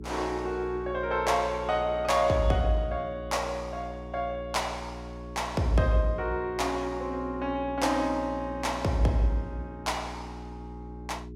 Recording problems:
hum; 60 Hz, harmonics up to 420 Hz, SNR 12 dB

